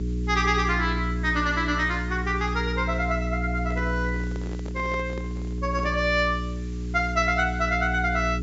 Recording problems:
treble cut off; nothing above 7.5 kHz
hum; 60 Hz, harmonics up to 420 Hz, SNR 4 dB
hiss; slope +2 dB per octave, SNR 27 dB
microphone handling noise; from 3.5 to 6 s; peak -9 dB vs average level

